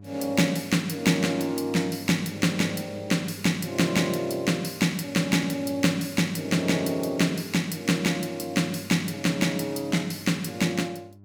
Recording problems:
hum; 50 Hz, harmonics up to 700 Hz, SNR 21 dB

